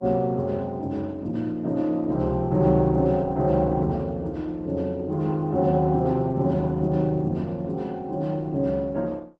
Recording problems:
codec artefacts; Opus, log-spectral distance 2 dB

